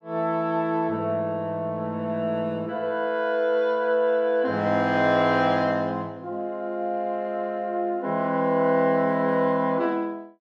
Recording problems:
none

